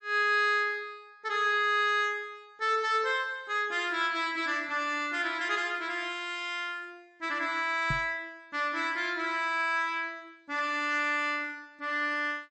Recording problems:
lossy codec; MP3, log-spectral distance 2 dB, nothing above 8 kHz
knock on the microphone; at 8 s; peak -2 dB vs average level

